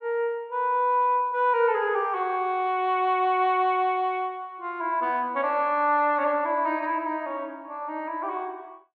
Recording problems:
none

